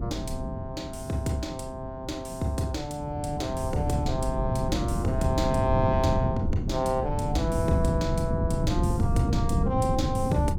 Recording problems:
wind noise; below 190 Hz, SNR 0 dB

